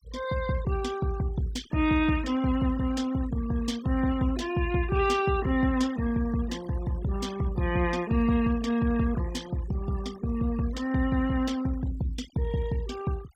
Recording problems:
noise reduction artefacts; signal-to-artefact ratio 18 dB

